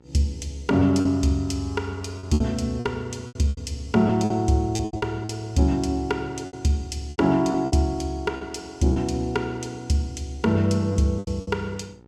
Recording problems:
electrical hum; 60 Hz, harmonics up to 1.4 kHz, SNR 28 dB
packet loss; 10% of the sound replaced, filled with repeated pitch periods

